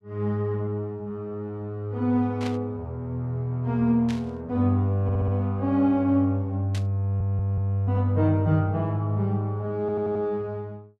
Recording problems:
burst of static; at 2.5 s, at 4 s and at 6.5 s; peak -8 dB vs average level
audio stuttering; at 5 s, at 7 s and at 10 s

